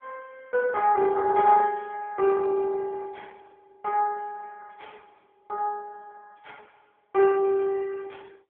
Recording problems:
telephone audio; 150 Hz to 2.5 kHz, AMR-NB

